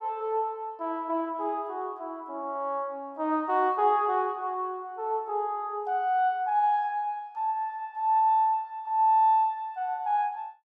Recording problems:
none

